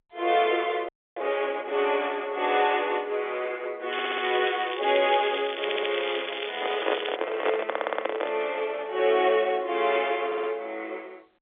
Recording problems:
telephone audio; 300 Hz to 3.6 kHz, G.711
frozen audio; at 1 s
crackle; from 4 to 7 s; loose cable, SNR 8 dB
audio stuttering; 4 times, first at 4 s
microphone handling noise; from 6.5 to 8.5 s; peak +3 dB vs average level

